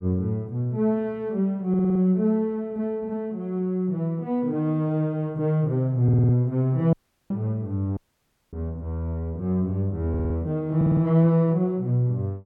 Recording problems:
audio stuttering; 4 times, first at 1.5 s
dropout; at 7 s and at 8 s for 0.5 s

